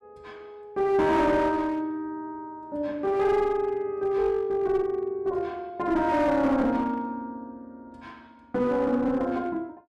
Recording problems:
distorted audio; hard clipping, uneven, signal-to-distortion ratio 11 dB

